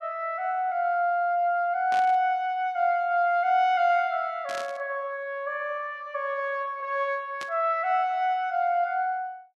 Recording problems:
burst of static; at 2 s, at 4.5 s and at 7.5 s; peak -8 dB vs average level

